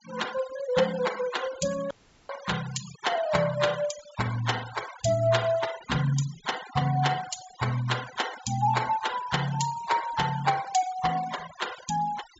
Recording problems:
low-pass filter; nothing above 8 kHz
noise reduction artefacts; signal-to-artefact ratio 13 dB
audio cutting out; at 2 s

